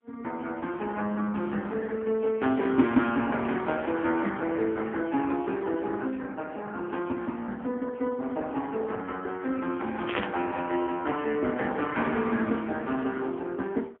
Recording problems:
telephone audio; 190 Hz to 3.3 kHz, AMR-NB, then MP3
burst of static; at 10 s; peak +1 dB vs average level

